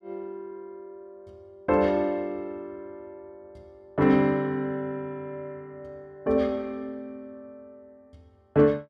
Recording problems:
none

